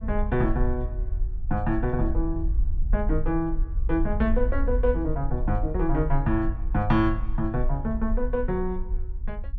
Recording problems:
rumble; below 52 Hz, SNR 3 dB

